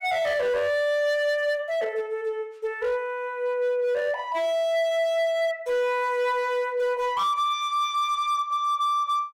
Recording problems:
distortion; hard clipping, signal-to-distortion ratio 11 dB

